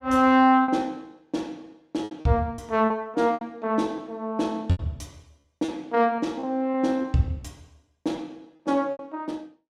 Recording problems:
lost packets; 8% of the sound replaced, filled with repeated pitch periods

